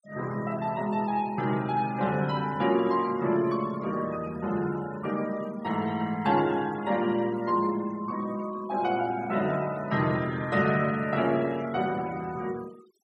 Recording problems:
denoising artefacts; signal-to-artefact ratio 20 dB

